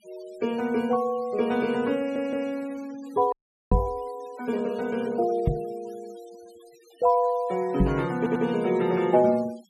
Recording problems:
noise reduction artefacts; signal-to-artefact ratio 23 dB
audio stuttering; at 2 s and at 8 s
audio freezing; at 3.5 s
knock on the microphone; at 3.5 s, at 5.5 s and at 8 s; peak +7 dB vs average level

